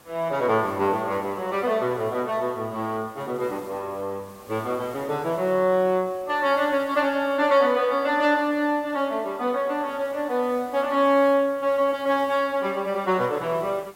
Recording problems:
hiss; slope -4 dB per octave, SNR 25 dB

